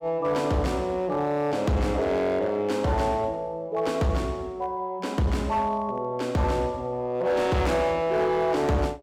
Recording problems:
distorted audio; hard clipping, uneven, signal-to-distortion ratio 11 dB

